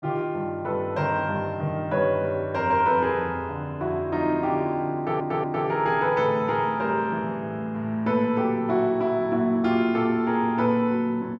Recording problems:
audio stuttering; at 5 s

